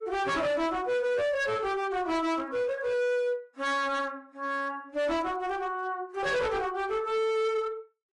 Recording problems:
codec artefacts; AAC, log-spectral distance 2 dB, nothing above 10.4 kHz
distorted audio; hard clipping, signal-to-distortion ratio 7 dB

